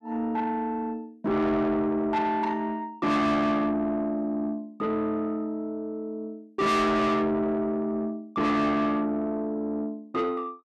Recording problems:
distorted audio; soft clipping, signal-to-distortion ratio 7 dB

